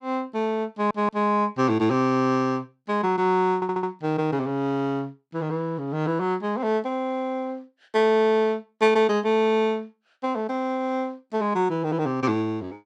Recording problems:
stutter; at 0.5 s and at 3.5 s

